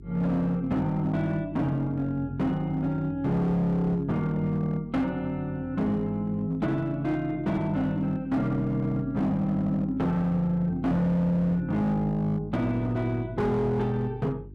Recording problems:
distortion; hard clipping, signal-to-distortion ratio 11 dB
hum; 50 Hz, harmonics up to 400 Hz, SNR 18 dB

